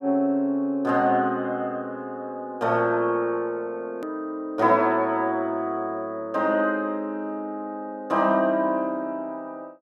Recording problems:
edit click; at 4 s

